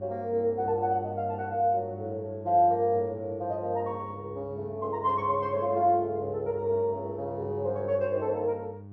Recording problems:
electrical hum; 50 Hz, harmonics up to 800 Hz, SNR 14 dB

